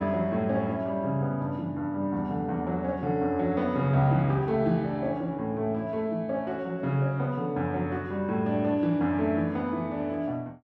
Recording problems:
none

